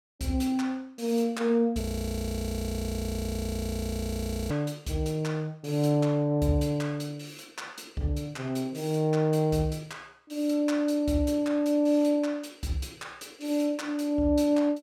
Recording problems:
frozen audio; at 2 s for 2.5 s

